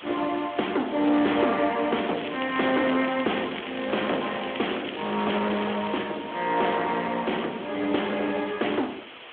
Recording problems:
phone line; 240 Hz to 3.4 kHz, Speex
distorted audio; hard clipping, uneven, signal-to-distortion ratio 10 dB
hiss; SNR 15 dB
crackling; from 2 to 6 s; loose cable, SNR 11 dB

